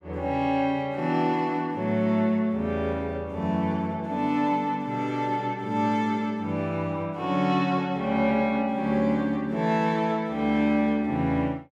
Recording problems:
none

